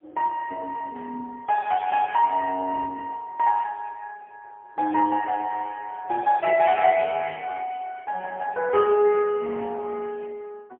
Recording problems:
telephone audio; 260 Hz to 3 kHz, AMR-NB, then MP3

